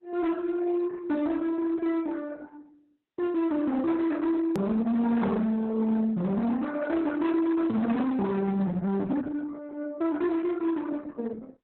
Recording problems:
codec artefacts; Opus, then Opus, log-spectral distance 3 dB, nothing above 13.1 kHz
distorted audio; hard clipping, uneven, signal-to-distortion ratio 6 dB
click at an edit; at 4.5 s

